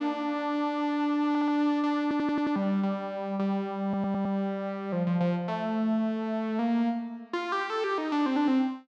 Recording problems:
stutter; at 1.5 s, at 2 s and at 4 s

